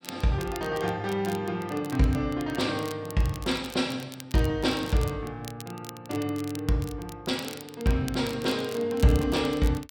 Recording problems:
crackle; vinyl, SNR 17 dB

